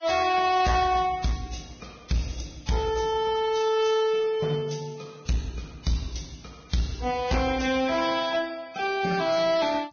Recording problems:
codec artefacts; Vorbis, log-spectral distance 5 dB, nothing above 6.3 kHz
distorted audio; hard clipping, uneven, signal-to-distortion ratio 9 dB

